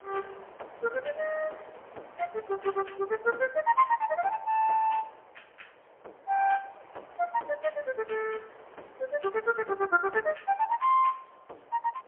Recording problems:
phone line; 340 Hz to 3.2 kHz, AMR-NB, then MP3
wind on the microphone; below 1.1 kHz, SNR 23 dB

